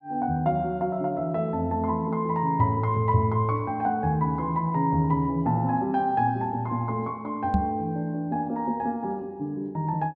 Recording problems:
microphone bump; at 7.5 s; peak +5 dB vs average level

